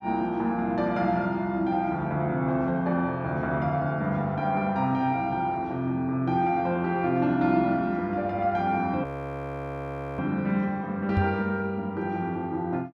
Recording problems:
frozen audio; at 9 s for 1 s
microphone thump; at 11 s; peak +4 dB vs average level

